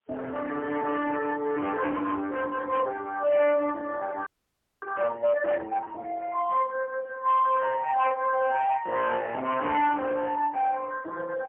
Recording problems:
telephone audio; 430 Hz to 3.1 kHz, AMR-NB, then MP3
distortion; hard clipping, signal-to-distortion ratio 11 dB
frozen audio; at 4.5 s for 0.5 s

